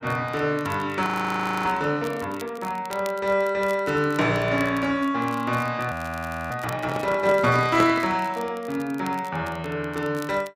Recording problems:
crackling; vinyl, SNR 22 dB
audio freezing; at 1 s for 0.5 s and at 6 s for 0.5 s
handling noise; from 7 to 8 s; peak +3 dB vs average level

